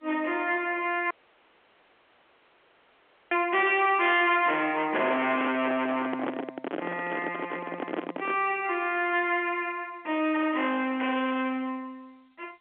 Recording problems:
telephone audio; 280 Hz to 3.5 kHz, G.711
distorted audio; hard clipping, signal-to-distortion ratio 8 dB
audio cutting out; at 1 s for 2 s
microphone handling noise; from 5 to 8.5 s; peak -1 dB vs average level

